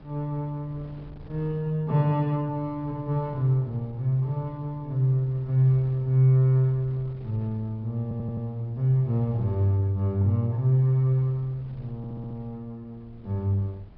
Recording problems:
treble missing; nothing above 5.5 kHz
wind on the microphone; below 200 Hz, SNR 24 dB
audio stuttering; at 8 s and at 12 s

